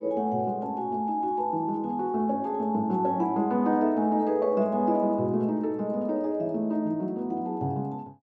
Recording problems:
none

